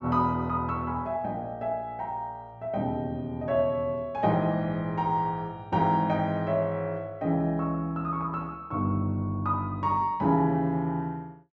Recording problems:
low-pass filter; nothing above 8 kHz

